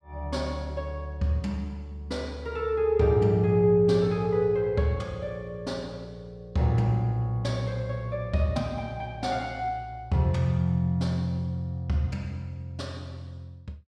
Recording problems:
none

